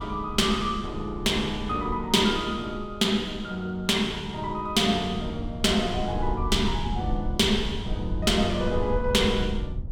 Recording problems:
rumble; below 86 Hz, SNR 9 dB

